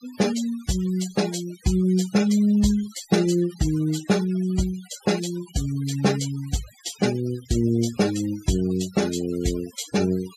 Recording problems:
noise reduction artefacts; signal-to-artefact ratio 15 dB

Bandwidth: 14.5 kHz